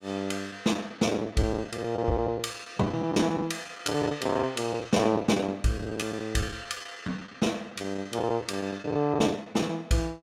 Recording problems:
lost packets; 14% of the sound replaced, filled with the last packet

